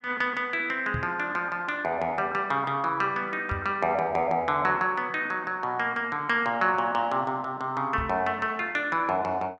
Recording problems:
microphone thump; at 1 s, at 3.5 s and at 8 s; peak -2 dB vs average level

